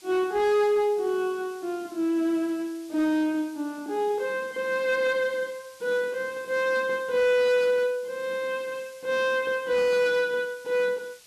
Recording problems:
distorted audio; hard clipping, signal-to-distortion ratio 12 dB
background hiss; slope +2 dB per octave, SNR 25 dB

